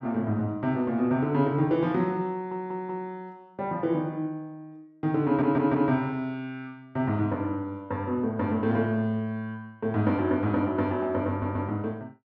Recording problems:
stutter; at 2.5 s, at 5.5 s and at 11 s

